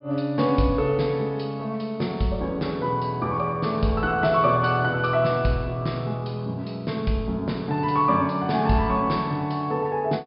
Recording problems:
treble cut off; nothing above 5.5 kHz

